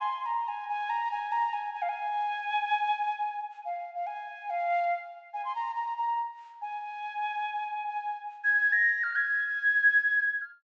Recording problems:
treble missing; nothing above 8 kHz

